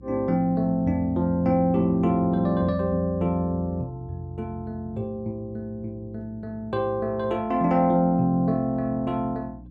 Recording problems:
hum; 60 Hz, harmonics up to 300 Hz, SNR 21 dB

